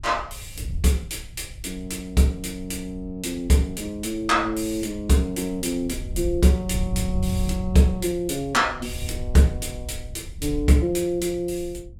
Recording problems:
wind on the microphone; below 94 Hz, SNR 11 dB

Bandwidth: 16.5 kHz